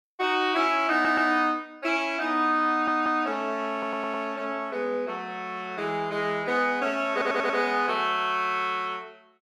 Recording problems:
audio stuttering; 4 times, first at 1 s

